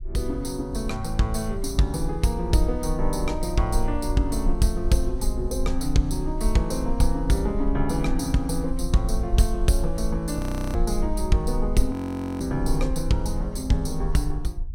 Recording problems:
low-frequency rumble; below 48 Hz, strongest tone 20 Hz, SNR 5 dB
frozen audio; at 10 s and at 12 s

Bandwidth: 16.5 kHz